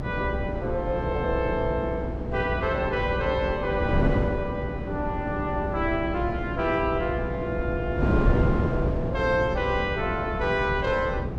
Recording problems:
hum; 60 Hz, harmonics up to 420 Hz, SNR 9 dB
wind noise; below 340 Hz, SNR 2 dB

